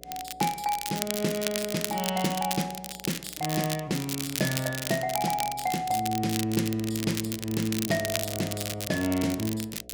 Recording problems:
mains hum; 60 Hz, harmonics up to 720 Hz, SNR 24 dB
crackling; vinyl, SNR 5 dB

